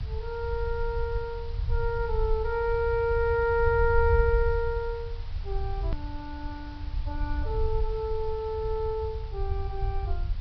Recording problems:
low-pass filter; nothing above 5.5 kHz
background hiss; SNR 22 dB
low-frequency rumble; below 72 Hz, SNR 4 dB
click at an edit; at 6 s

